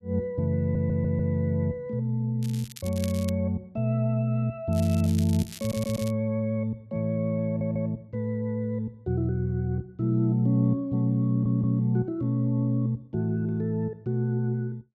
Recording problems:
audio stuttering; 4 times, first at 0.5 s
crackling; at 2.5 s and from 4.5 to 6 s; loose cable, SNR 16 dB

